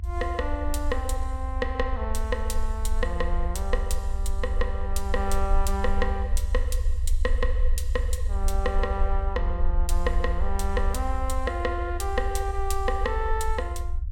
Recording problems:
low-frequency rumble; below 58 Hz, strongest tone 20 Hz, SNR -2 dB

